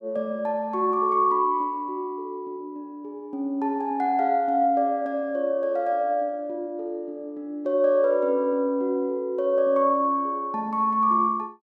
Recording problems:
none

